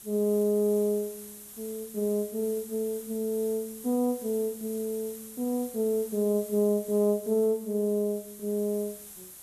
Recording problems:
background hiss; slope -1 dB per octave, SNR 15 dB

